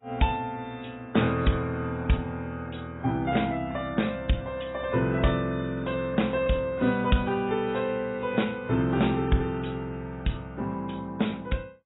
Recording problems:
codec artefacts; AAC, log-spectral distance 3 dB, nothing above 3.8 kHz

